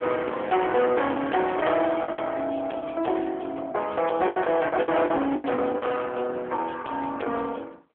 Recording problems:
phone line; 300 Hz to 3.4 kHz, AMR-NB
distortion; hard clipping, uneven, signal-to-distortion ratio 8 dB
packet loss; 8% of the sound replaced, filled with the last packet

